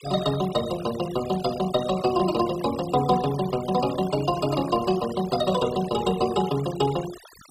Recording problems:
noise reduction artefacts; signal-to-artefact ratio 15 dB

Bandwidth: 15.5 kHz